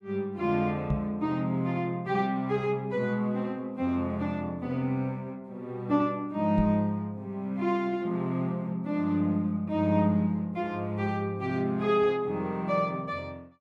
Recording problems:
microphone bump; at 1 s and at 6.5 s; peak +2 dB vs average level

